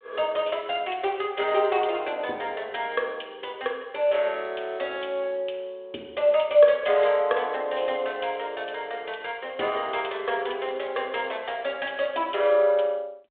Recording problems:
phone line; 300 Hz to 3.6 kHz, G.726

